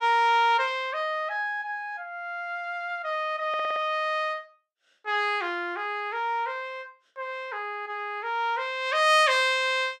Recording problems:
audio stuttering; at 3.5 s

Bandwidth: 15 kHz